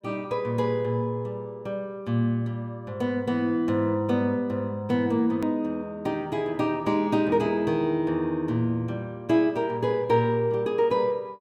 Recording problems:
click at an edit; at 5.5 s

